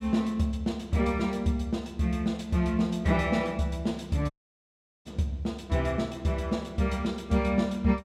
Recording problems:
audio cutting out; at 4.5 s for 1 s

